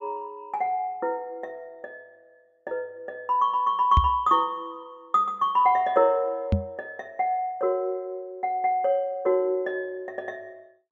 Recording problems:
microphone bump; at 4 s and at 6.5 s; peak +7 dB vs average level

